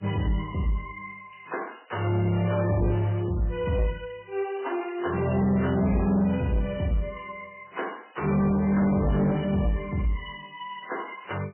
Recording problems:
lossy compression; MP3, log-spectral distance 5 dB, nothing above 3 kHz
distorted audio; soft clipping, signal-to-distortion ratio 11 dB

